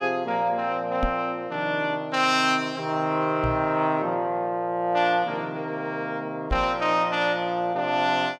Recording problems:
microphone thump; at 1 s, at 3.5 s and at 6.5 s; peak 0 dB vs average level

